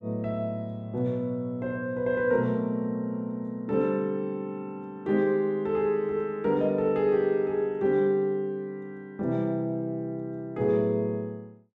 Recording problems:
none

